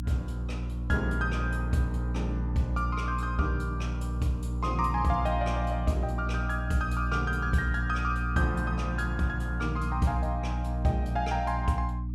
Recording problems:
mains hum; 60 Hz, harmonics up to 300 Hz, SNR 1 dB

